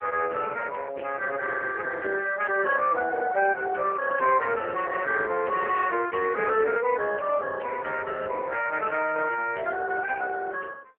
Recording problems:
phone line; 320 Hz to 2.6 kHz, AMR-NB

